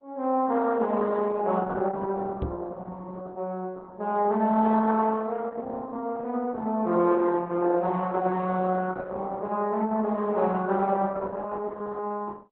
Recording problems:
lossy compression; Opus, log-spectral distance 3 dB
microphone thump; at 2.5 s; peak -1 dB vs average level

